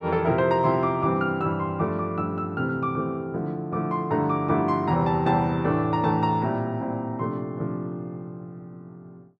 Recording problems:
none

